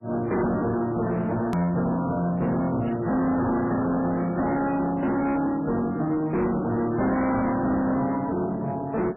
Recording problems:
lossy codec; MP3, log-spectral distance 3 dB, nothing above 13.1 kHz
distorted audio; soft clipping, signal-to-distortion ratio 7 dB
hard cut with a click; at 1.5 s

